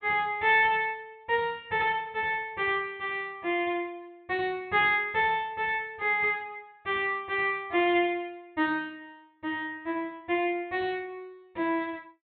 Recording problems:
treble cut off; nothing above 4 kHz

